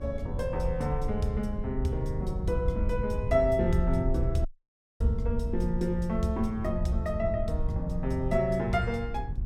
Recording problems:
hum; 60 Hz, harmonics up to 1.5 kHz, SNR 20 dB
wind noise; below 86 Hz, SNR 3 dB
dropout; at 4.5 s for 0.5 s

